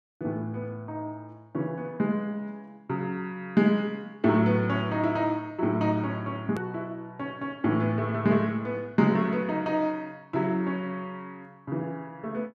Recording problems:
hard cut with a click; at 6.5 s

